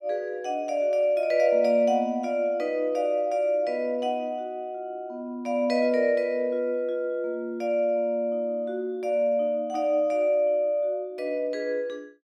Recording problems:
none

